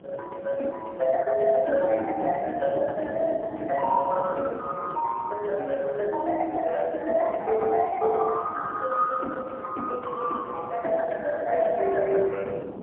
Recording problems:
phone line; 280 Hz to 2.2 kHz, AMR-NB, then MP3
wind on the microphone; below 500 Hz, SNR 15 dB

